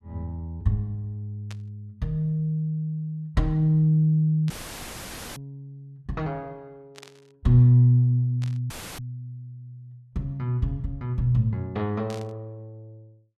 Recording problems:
burst of static; 5 times, first at 1.5 s; peak -14 dB vs average level
audio cutting out; at 4.5 s for 1 s and at 8.5 s; filled with static

